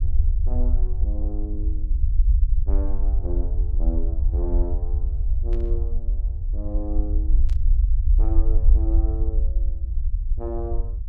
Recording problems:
low-frequency rumble; below 58 Hz, SNR -11 dB
static burst; at 5.5 s and at 7.5 s; peak -8 dB vs average level

